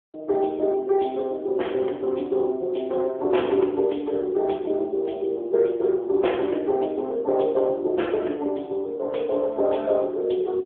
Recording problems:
phone line; 260 Hz to 3.4 kHz, AMR-NB

